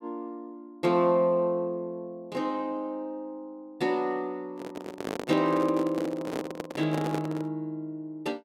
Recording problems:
microphone handling noise; from 4.5 to 7.5 s; peak 0 dB vs average level

